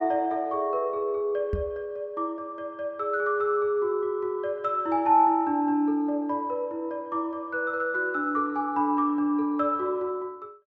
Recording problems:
microphone thump; at 1.5 s; peak 0 dB vs average level

